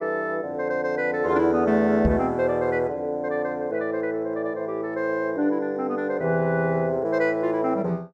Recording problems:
microphone thump; at 2 s; peak +4 dB vs average level

